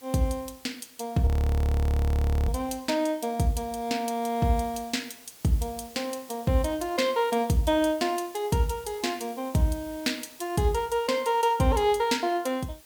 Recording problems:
hiss; slope -1 dB per octave, SNR 22 dB
frozen audio; at 1.5 s for 1 s

